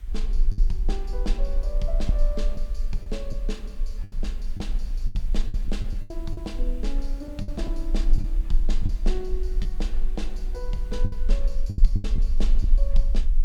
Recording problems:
background hiss; SNR 20 dB
rumble; below 36 Hz, strongest tone 20 Hz, SNR -8 dB
packet loss; 7% of the sound replaced, filled with the last packet

